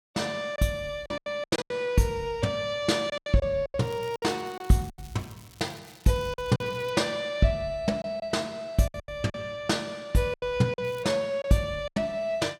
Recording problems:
packet loss; 10% of the sound replaced, filled with silence
crackling; from 4 to 7 s and at 11 s; loose cable, SNR 24 dB

